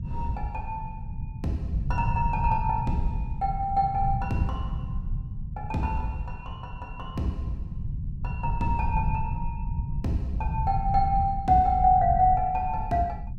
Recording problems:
low-frequency rumble; below 130 Hz, SNR 6 dB

